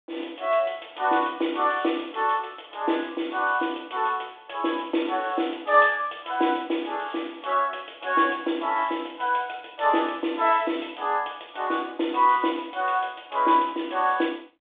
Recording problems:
telephone audio; 220 Hz to 3.6 kHz, G.726

